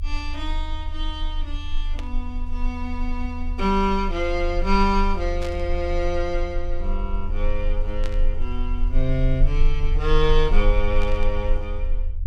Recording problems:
low-frequency rumble; below 34 Hz, strongest tone 26 Hz, SNR 1 dB
static burst; 4 times, first at 2 s; peak -7 dB vs average level

